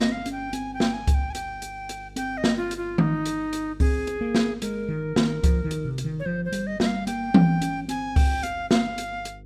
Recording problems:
hum; 50 Hz, harmonics up to 500 Hz, SNR 22 dB

